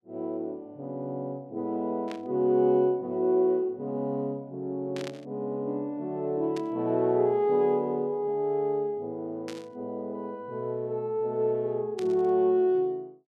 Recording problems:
static burst; 5 times, first at 2 s; peak -9 dB vs average level

